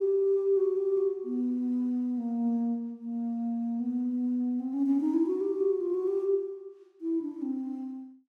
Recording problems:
none

